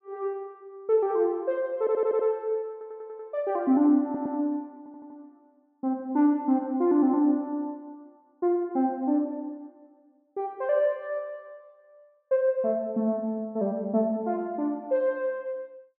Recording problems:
audio stuttering; 4 times, first at 2 s

